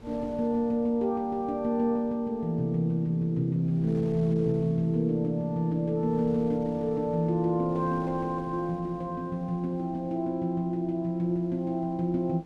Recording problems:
wind on the microphone; below 480 Hz, SNR 22 dB

